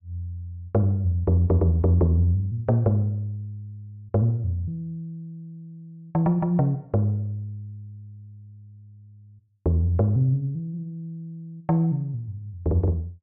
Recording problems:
none

